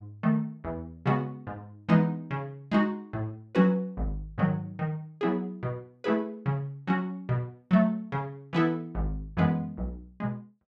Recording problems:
none

